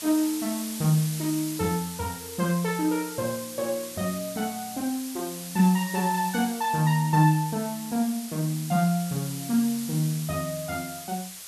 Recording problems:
background hiss; slope +3 dB per octave, SNR 10 dB

